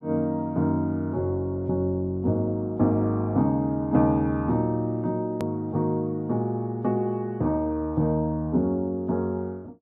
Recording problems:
click at an edit; at 5.5 s

